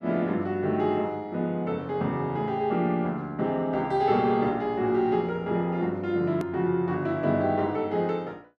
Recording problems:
edit click; at 6.5 s

